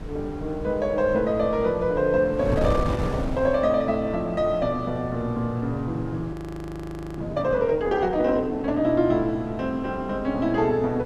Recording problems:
wind noise; below 350 Hz, SNR 11 dB
audio freezing; at 6.5 s for 1 s

